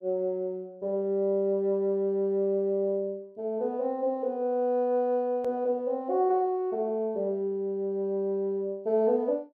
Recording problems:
hard cut with a click; at 5.5 s

